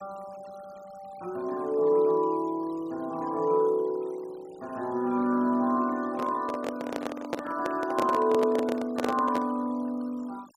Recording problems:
noise reduction artefacts; signal-to-artefact ratio 25 dB
handling noise; from 6 to 9.5 s; peak +2 dB vs average level

